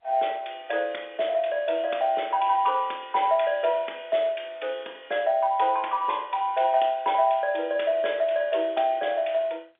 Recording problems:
phone line; 300 Hz to 3.6 kHz, G.711

